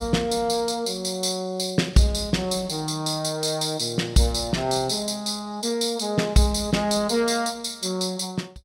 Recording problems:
none

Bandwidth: 16 kHz